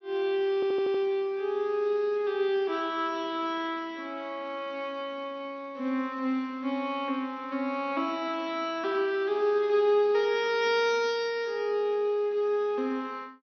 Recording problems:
low-pass filter; nothing above 6.1 kHz
stutter; at 0.5 s

